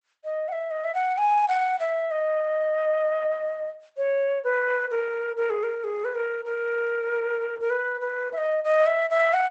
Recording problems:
lossy compression; Opus, log-spectral distance 2 dB, nothing above 8 kHz

